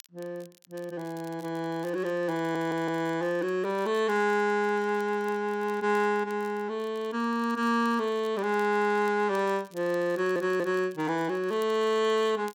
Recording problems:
crackle; vinyl, SNR 28 dB
audio stuttering; at 2.5 s and at 10 s

